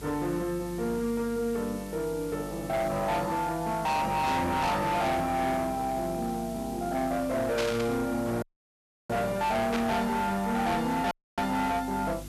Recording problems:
distorted audio; hard clipping, uneven, signal-to-distortion ratio 7 dB
electrical hum; 50 Hz, harmonics up to 350 Hz, SNR 19 dB
hiss; slope 0 dB per octave, SNR 18 dB
static burst; at 7.5 s and at 9.5 s; peak 0 dB vs average level
audio cutting out; at 8.5 s for 0.5 s and at 11 s

